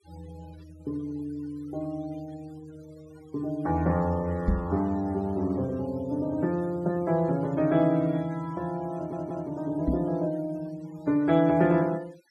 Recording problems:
denoising artefacts; signal-to-artefact ratio 26 dB
microphone thump; at 4.5 s and at 10 s; peak +6 dB vs average level
stutter; at 9 s

